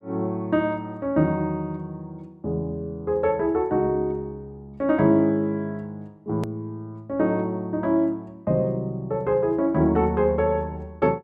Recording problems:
hard cut with a click; at 6.5 s

